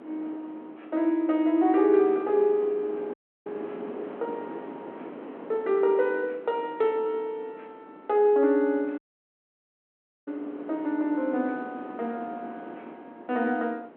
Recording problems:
telephone audio; 240 Hz to 3.6 kHz, G.726
wind on the microphone; below 670 Hz, SNR 16 dB
audio cutting out; at 3 s and at 9 s for 1.5 s

